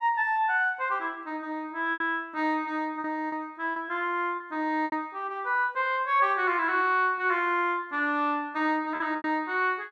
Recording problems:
lost packets; 4% of the sound replaced, filled with repeated pitch periods

